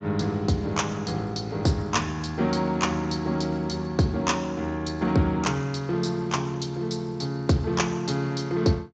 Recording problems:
codec artefacts; Speex, log-spectral distance 5 dB, nothing above 16.5 kHz

